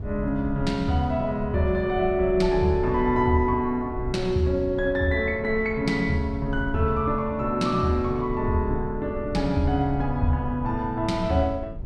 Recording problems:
rumble; below 84 Hz, SNR 12 dB

